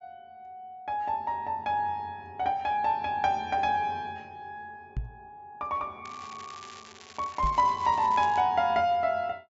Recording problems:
low-pass filter; nothing above 8 kHz
knock on the microphone; at 5 s and at 7.5 s; peak -2 dB vs average level
crackle; from 6 to 8.5 s; loose cable, SNR 21 dB

